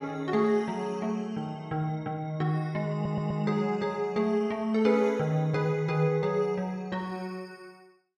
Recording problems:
audio stuttering; at 3 s

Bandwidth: 14.5 kHz